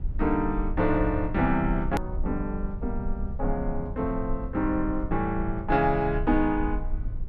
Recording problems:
rumble; below 58 Hz, SNR 7 dB
hard cut with a click; at 2 s

